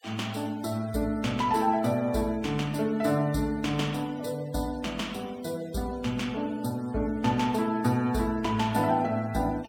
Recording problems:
denoising artefacts; signal-to-artefact ratio 23 dB

